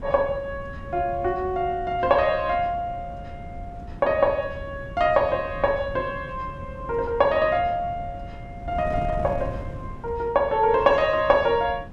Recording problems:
wind noise; below 190 Hz, SNR 14 dB

